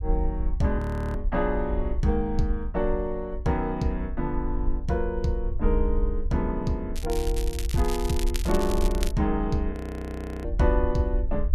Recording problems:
low-frequency rumble; below 56 Hz, SNR 3 dB
frozen audio; at 1 s and at 9.5 s for 0.5 s
crackle; from 7 to 9 s; loose cable, SNR 10 dB

